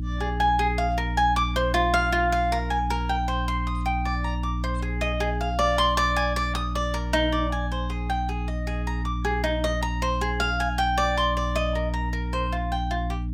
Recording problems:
hum; 60 Hz, harmonics up to 300 Hz, SNR 4 dB

